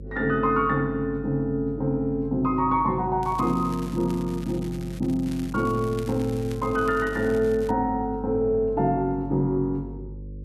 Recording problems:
electrical hum; 50 Hz, harmonics up to 550 Hz, SNR 14 dB
crackle; from 3 to 7.5 s; loose cable, SNR 22 dB

